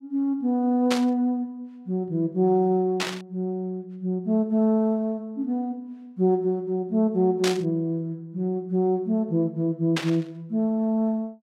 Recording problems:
static burst; 4 times, first at 1 s; peak +2 dB vs average level

